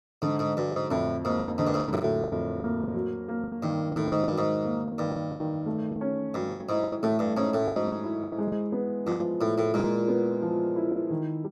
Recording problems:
packet loss; 12% of the sound replaced, filled with the last packet

